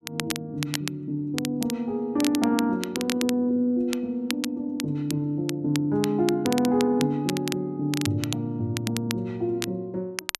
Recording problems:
crackle; vinyl, SNR 9 dB

